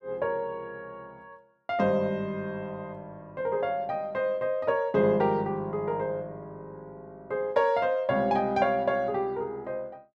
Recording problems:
none

